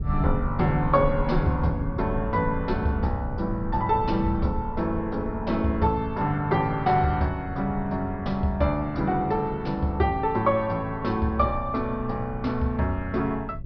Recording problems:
low-pass filter; nothing above 5.5 kHz
rumble; below 100 Hz, SNR 11 dB

